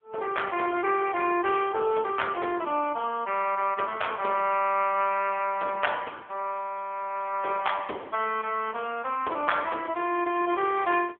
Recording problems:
phone line; 260 Hz to 3.4 kHz, AMR-NB

